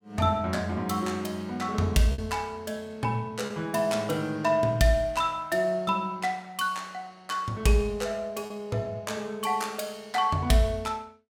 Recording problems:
packet loss; 1.3% of the sound replaced, filled with repeated pitch periods

